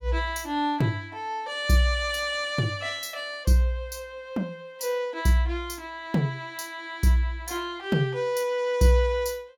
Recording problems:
none

